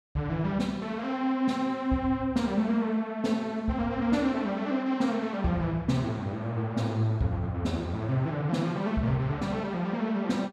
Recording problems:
none

